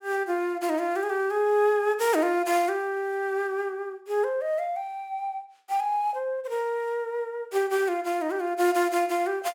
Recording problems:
none

